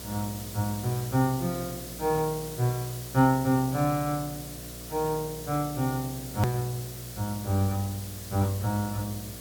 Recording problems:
mains hum; 60 Hz, harmonics up to 720 Hz, SNR 16 dB
hiss; slope +2 dB per octave, SNR 11 dB
hard cut with a click; at 6.5 s

